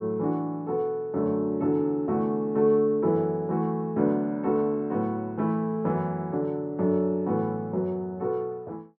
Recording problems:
none

